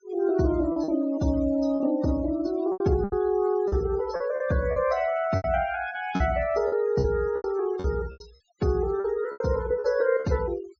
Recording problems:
treble missing; nothing above 8 kHz
noise reduction artefacts; signal-to-artefact ratio 21 dB
packet loss; 10% of the sound replaced, filled with repeated pitch periods

